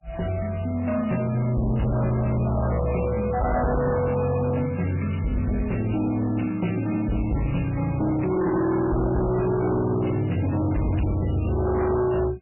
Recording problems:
lossy compression; MP3, log-spectral distance 5 dB, nothing above 2.9 kHz
distortion; hard clipping, signal-to-distortion ratio 7 dB

